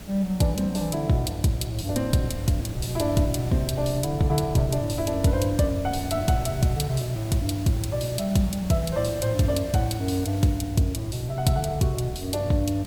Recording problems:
mains hum; 60 Hz, harmonics up to 660 Hz, SNR 19 dB
background hiss; slope -3 dB per octave, SNR 18 dB
wind on the microphone; below 140 Hz, SNR 17 dB

